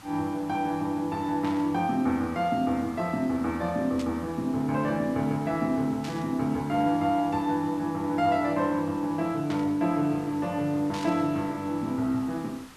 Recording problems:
background hiss; SNR 21 dB
burst of static; 5 times, first at 1.5 s; peak -9 dB vs average level

